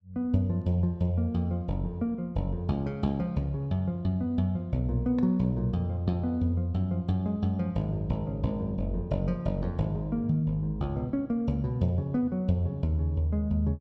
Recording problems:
none

